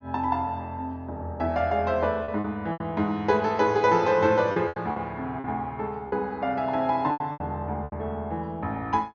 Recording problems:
treble cut off; nothing above 6.8 kHz
lost packets; 7% of the sound replaced, filled with repeated pitch periods

